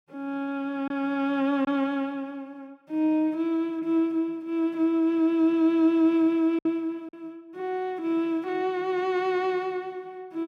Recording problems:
lost packets; 1.4% of the sound replaced, filled with silence

